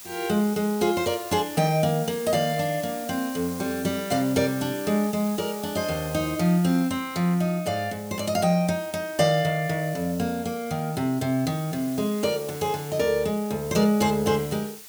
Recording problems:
hiss; slope +1 dB per octave, SNR 15 dB

